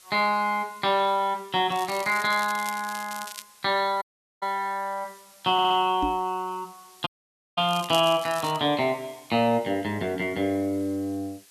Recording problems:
hiss; slope +1 dB per octave, SNR 25 dB
crackling; from 1.5 to 3.5 s and at 7.5 s; loose cable, SNR 14 dB
audio cutting out; at 4 s and at 7 s for 0.5 s
audio stuttering; at 5.5 s
microphone thump; at 6 s; peak -1 dB vs average level

